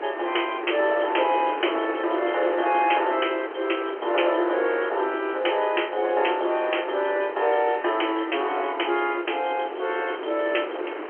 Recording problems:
phone line; 300 Hz to 3.2 kHz, G.711
wind on the microphone; below 1 kHz, SNR 10 dB

